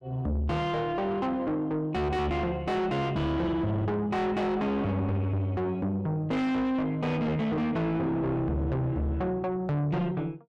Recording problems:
distorted audio; soft clipping, signal-to-distortion ratio 6 dB

